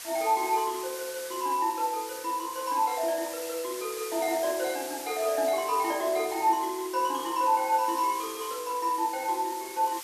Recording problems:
hiss; slope +2 dB per octave, SNR 11 dB

